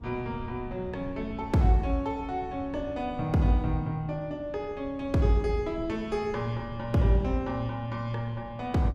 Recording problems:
wind on the microphone; below 170 Hz, SNR 15 dB

